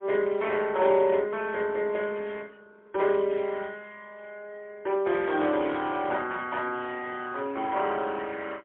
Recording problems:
telephone audio; 280 Hz to 3.3 kHz, AMR-NB, then MP3

